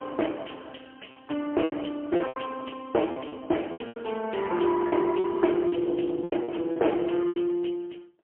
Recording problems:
phone line; 240 Hz to 3.1 kHz, AMR-NB, then MP3
packet loss; 11% of the sound replaced, filled with repeated pitch periods

